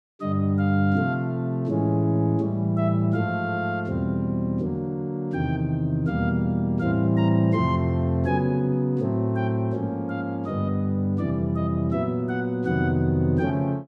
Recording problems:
none

